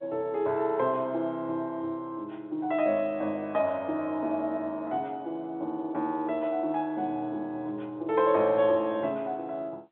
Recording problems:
telephone audio; 190 Hz to 3.8 kHz, G.711

